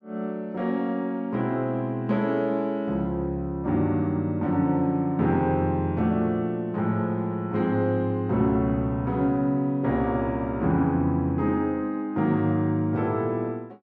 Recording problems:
none

